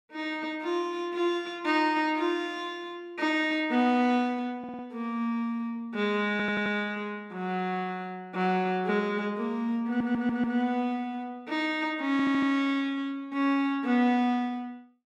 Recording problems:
audio stuttering; 4 times, first at 4.5 s

